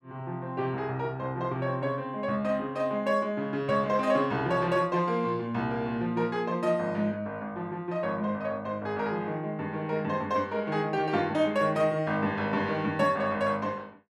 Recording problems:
none

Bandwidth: 12.5 kHz